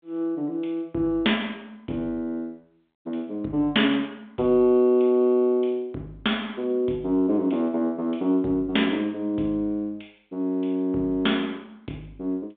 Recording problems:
phone line; 220 Hz to 3.6 kHz, G.726

